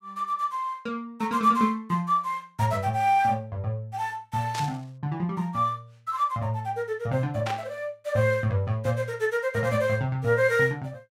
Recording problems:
burst of static; at 4.5 s and at 7.5 s; peak -3 dB vs average level

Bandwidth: 16 kHz